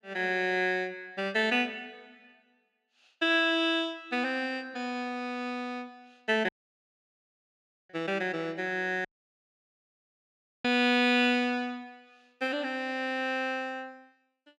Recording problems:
audio cutting out; at 6.5 s for 1.5 s and at 9 s for 1.5 s

